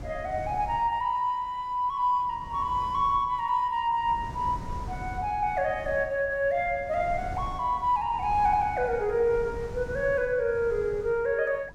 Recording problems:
wind on the microphone; below 200 Hz, SNR 15 dB

